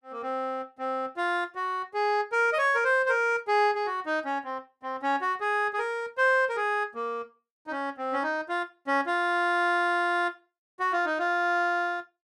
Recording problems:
none

